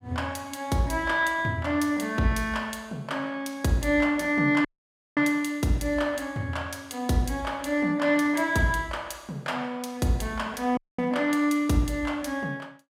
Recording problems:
dropout; at 4.5 s for 0.5 s and at 11 s

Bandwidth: 16 kHz